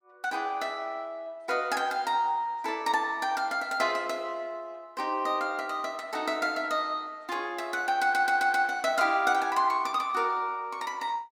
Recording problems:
stutter; at 8 s

